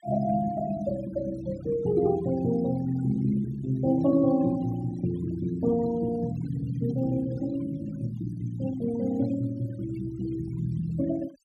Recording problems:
noise reduction artefacts; signal-to-artefact ratio 19 dB

